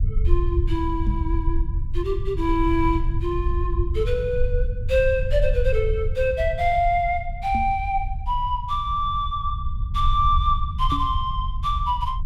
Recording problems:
rumble; below 72 Hz, SNR 3 dB
microphone thump; at 1 s, at 7.5 s and at 11 s; peak -1 dB vs average level

